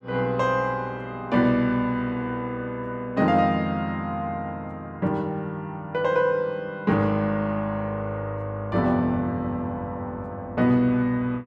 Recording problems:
none

